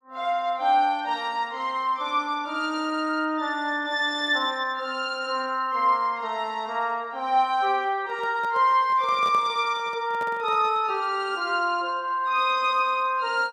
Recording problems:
handling noise; from 8 to 11 s; peak -10 dB vs average level

